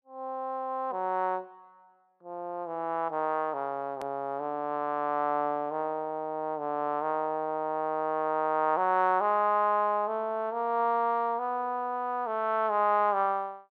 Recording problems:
click at an edit; at 4 s

